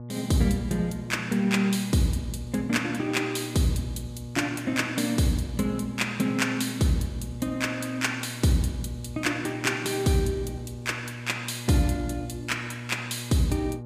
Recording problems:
electrical hum; 60 Hz, harmonics up to 840 Hz, SNR 12 dB

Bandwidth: 15 kHz